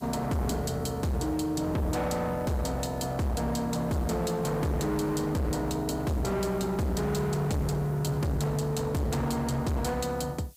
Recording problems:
distorted audio; hard clipping, signal-to-distortion ratio 6 dB
hiss; SNR 25 dB

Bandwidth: 15.5 kHz